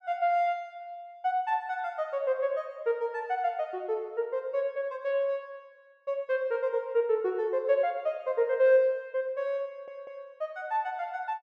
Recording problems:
audio stuttering; at 9.5 s

